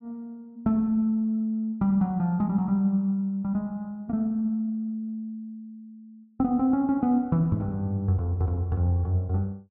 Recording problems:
none

